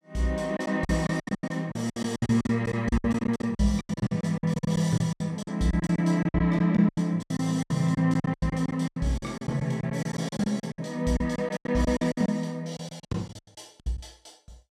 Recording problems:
lost packets; 21% of the sound replaced, filled with silence

